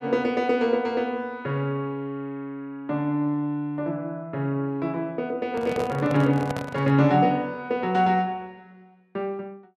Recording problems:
handling noise; from 5.5 to 7 s; peak -2 dB vs average level

